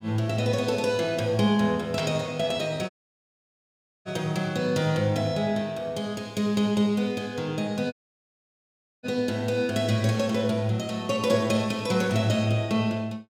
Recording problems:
audio cutting out; at 3 s for 1 s and at 8 s for 1 s

